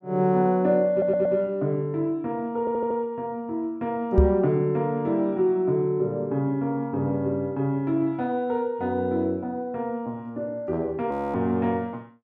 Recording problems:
stutter; at 1 s and at 2.5 s
microphone thump; at 4 s; peak +9 dB vs average level
frozen audio; at 11 s

